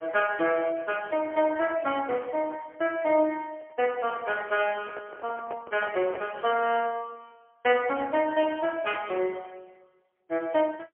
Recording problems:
telephone audio; 240 Hz to 3.1 kHz, AMR-NB, then MP3
microphone handling noise; from 3.5 to 6.5 s; peak -8 dB vs average level

